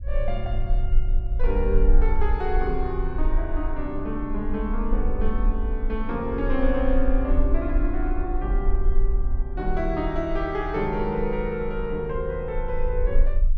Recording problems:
low-frequency rumble; below 40 Hz, strongest tone 22 Hz, SNR 0 dB

